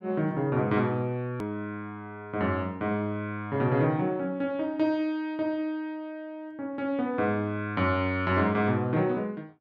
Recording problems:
hard cut with a click; at 1.5 s

